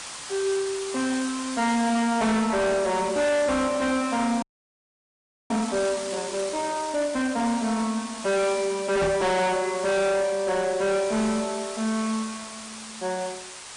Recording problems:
lossy compression; MP3, log-spectral distance 11 dB, nothing above 9.2 kHz
distorted audio; soft clipping, signal-to-distortion ratio 7 dB
background hiss; SNR 11 dB
frozen audio; at 4.5 s for 1 s
microphone thump; at 9 s; peak 0 dB vs average level

